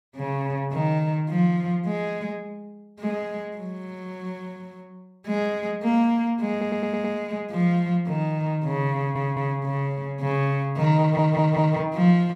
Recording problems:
audio stuttering; at 6.5 s, at 9 s and at 11 s

